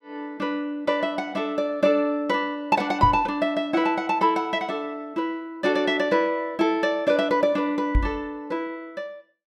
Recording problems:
microphone thump; at 3 s and at 8 s; peak +5 dB vs average level

